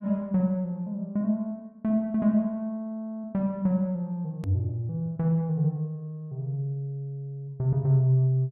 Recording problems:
hard cut with a click; at 4.5 s

